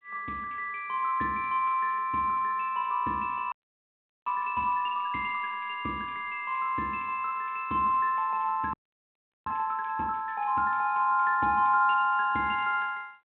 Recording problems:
phone line; 170 Hz to 3.6 kHz, G.726
audio freezing; at 3.5 s for 0.5 s and at 8.5 s for 0.5 s

